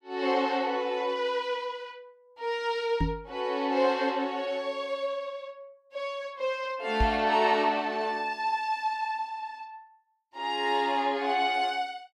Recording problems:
microphone bump; at 3 s and at 7 s; peak +4 dB vs average level

